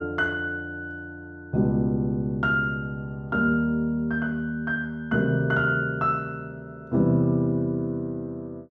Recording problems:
none

